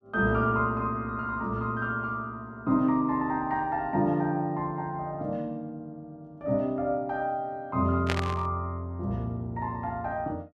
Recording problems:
burst of static; at 8 s; peak +4 dB vs average level

